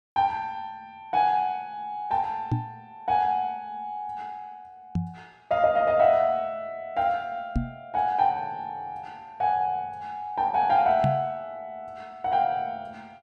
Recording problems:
microphone thump; 4 times, first at 2.5 s; peak +4 dB vs average level

